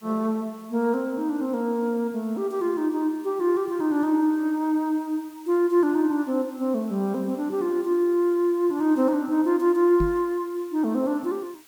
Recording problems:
hiss; slope 0 dB per octave, SNR 28 dB
microphone thump; at 10 s; peak -1 dB vs average level

